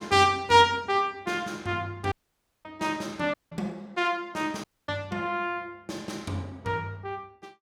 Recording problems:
audio cutting out; at 2 s for 0.5 s, at 3.5 s and at 4.5 s

